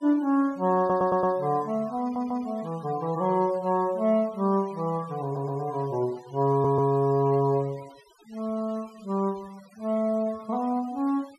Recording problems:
noise reduction artefacts; signal-to-artefact ratio 24 dB
audio stuttering; 4 times, first at 1 s

